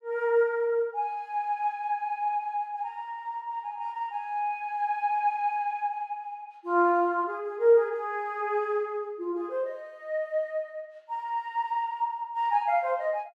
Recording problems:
none

